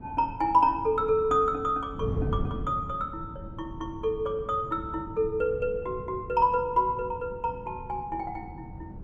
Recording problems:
wind noise; below 200 Hz, SNR 12 dB

